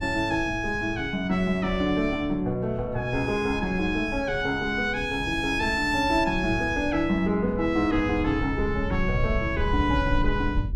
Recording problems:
rumble; below 96 Hz, SNR 10 dB

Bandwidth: 15.5 kHz